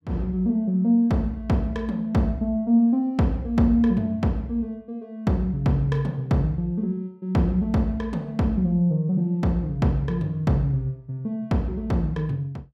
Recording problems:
none

